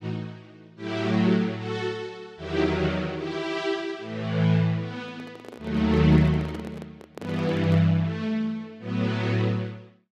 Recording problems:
handling noise; from 5 to 8 s; peak -9 dB vs average level

